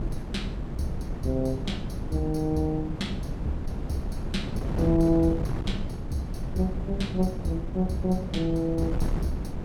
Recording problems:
wind noise; below 200 Hz, SNR 4 dB

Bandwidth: 18 kHz